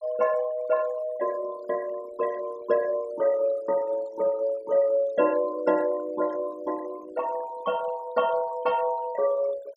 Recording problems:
noise reduction artefacts; signal-to-artefact ratio 19 dB

